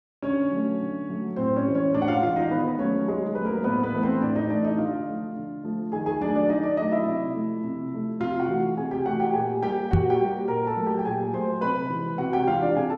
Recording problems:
knock on the microphone; at 10 s; peak +8 dB vs average level

